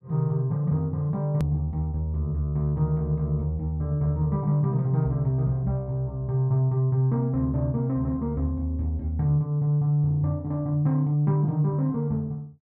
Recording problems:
hard cut with a click; at 1.5 s

